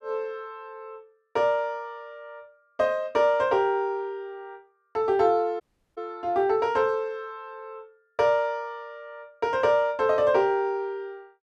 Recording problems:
audio cutting out; at 5.5 s

